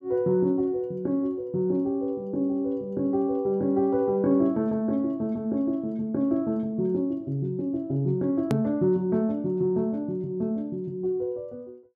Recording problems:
click at an edit; at 8.5 s

